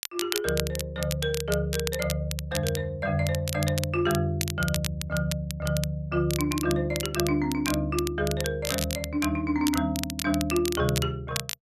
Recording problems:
crackle; vinyl, SNR 7 dB

